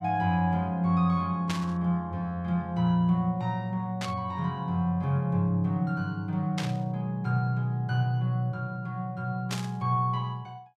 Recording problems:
burst of static; 4 times, first at 1.5 s; peak -2 dB vs average level

